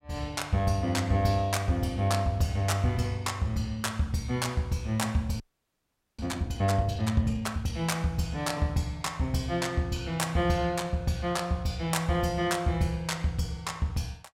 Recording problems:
frozen audio; at 5.5 s for 1 s

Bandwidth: 16 kHz